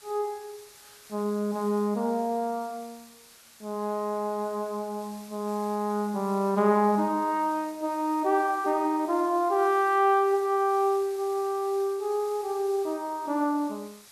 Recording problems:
background hiss; slope +1 dB per octave, SNR 22 dB

